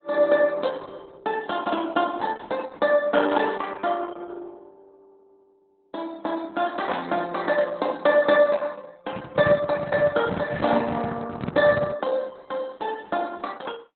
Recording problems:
lossy codec; Opus, log-spectral distance 4 dB, nothing above 3.9 kHz
microphone handling noise; from 9 to 12 s; peak 0 dB vs average level

